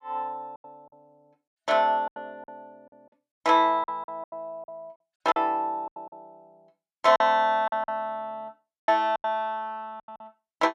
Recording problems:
lost packets; 13% of the sound replaced, filled with silence

